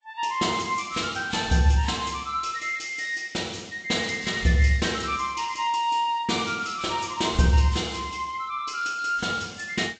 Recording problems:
lossy codec; G.722, then Vorbis, log-spectral distance 6 dB, nothing above 7.6 kHz

